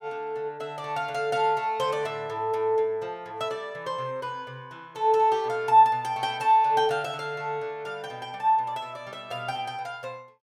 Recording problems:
none

